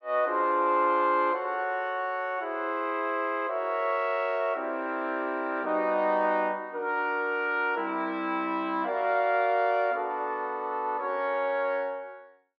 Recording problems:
none

